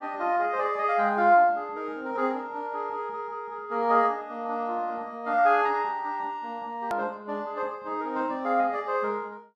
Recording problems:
click at an edit; at 7 s

